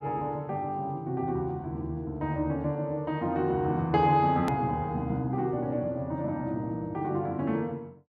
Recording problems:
click at an edit; at 4.5 s

